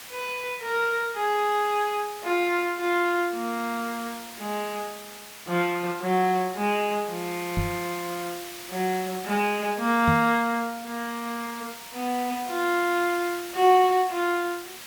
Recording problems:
background hiss; SNR 14 dB
microphone thump; at 7.5 s and at 10 s; peak +3 dB vs average level

